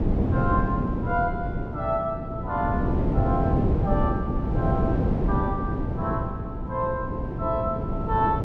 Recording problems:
electrical hum; 60 Hz, harmonics up to 720 Hz, SNR 10 dB
wind noise; below 300 Hz, SNR -3 dB

